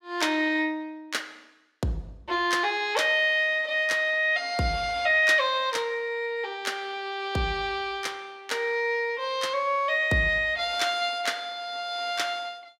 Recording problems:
none

